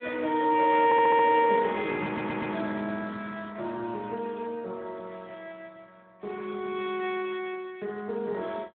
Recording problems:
telephone audio; 130 Hz to 3.6 kHz, Speex
stutter; at 1 s and at 2 s

